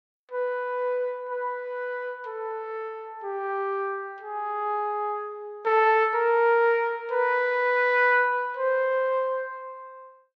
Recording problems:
none

